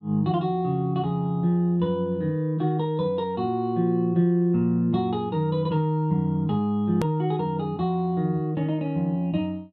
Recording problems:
click at an edit; at 7 s

